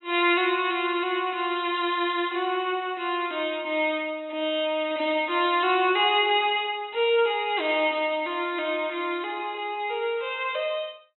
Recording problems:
treble cut off; nothing above 4 kHz

